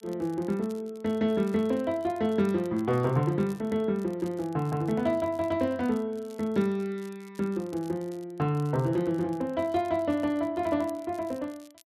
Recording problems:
crackling; vinyl, SNR 27 dB

